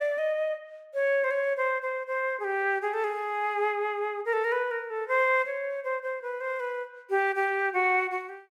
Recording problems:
none

